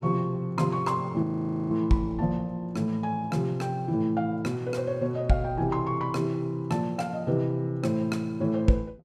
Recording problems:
audio freezing; at 1 s

